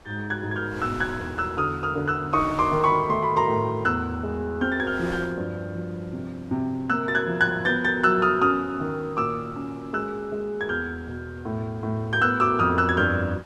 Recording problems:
wind on the microphone; below 1.4 kHz, SNR 21 dB

